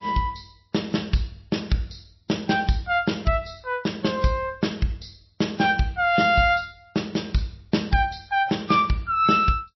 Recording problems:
lossy compression; MP3, log-spectral distance 5 dB, nothing above 5.7 kHz

